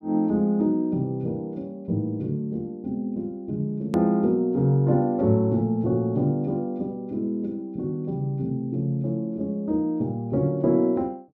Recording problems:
hard cut with a click; at 4 s

